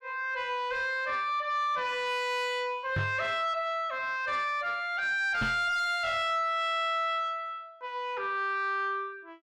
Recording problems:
distortion; soft clipping, signal-to-distortion ratio 11 dB
knock on the microphone; at 3 s and at 5.5 s; peak +2 dB vs average level

